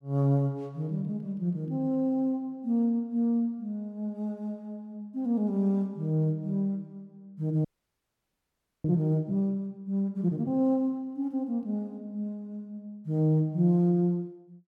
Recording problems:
audio freezing; at 7.5 s for 1 s

